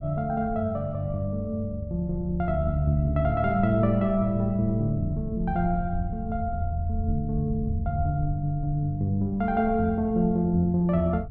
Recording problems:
low-frequency rumble; below 96 Hz, SNR 11 dB

